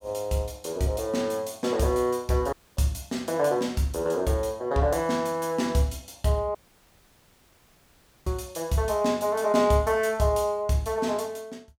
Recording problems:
audio cutting out; at 2.5 s and at 6.5 s for 1.5 s

